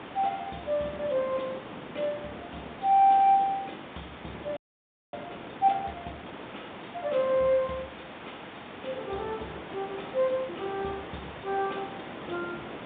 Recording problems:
phone line; 130 Hz to 3.7 kHz, G.726
hiss; SNR 16 dB
wind on the microphone; below 720 Hz, SNR 16 dB
frozen audio; at 4.5 s for 0.5 s

